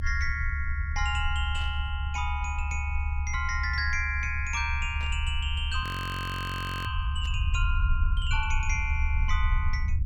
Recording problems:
rumble; below 74 Hz, SNR -1 dB
burst of static; at 1.5 s, at 5 s and at 7 s; peak -11 dB vs average level
frozen audio; at 6 s for 1 s

